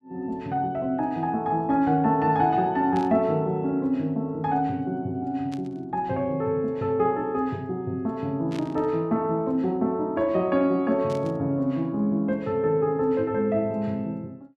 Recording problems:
static burst; 4 times, first at 3 s; peak -12 dB vs average level

